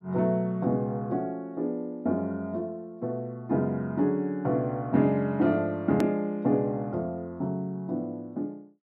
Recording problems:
click at an edit; at 6 s

